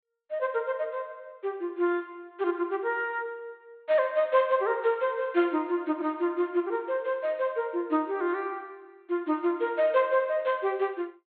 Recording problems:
low-pass filter; nothing above 4 kHz

